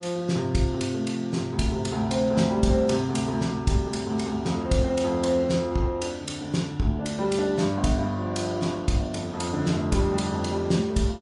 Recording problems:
codec artefacts; MP3, log-spectral distance 2 dB, nothing above 11 kHz

